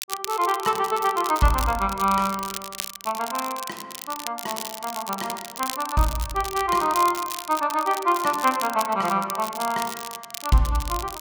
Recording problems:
crackling; vinyl, SNR 10 dB

